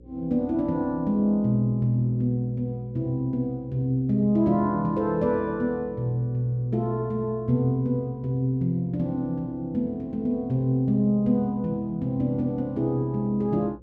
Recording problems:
hum; 60 Hz, harmonics up to 540 Hz, SNR 25 dB

